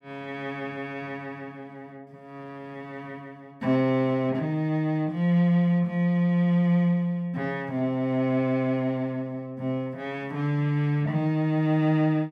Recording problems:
none

